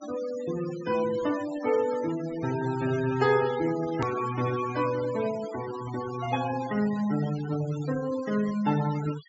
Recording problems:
treble cut off; nothing above 8 kHz
denoising artefacts; signal-to-artefact ratio 14 dB
click at an edit; at 4 s

